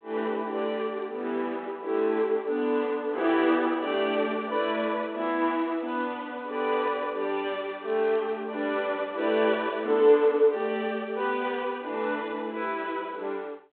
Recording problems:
telephone audio; 260 Hz to 3.5 kHz, G.726

